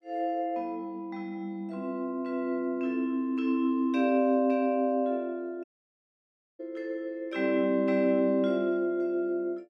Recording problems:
dropout; at 5.5 s for 1 s

